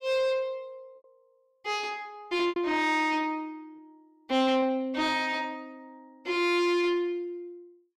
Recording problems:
distortion; soft clipping, signal-to-distortion ratio 10 dB
packet loss; 1.7% of the sound replaced, filled with repeated pitch periods

